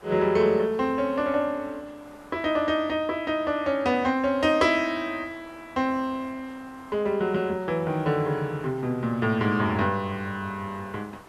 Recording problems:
hiss; SNR 24 dB

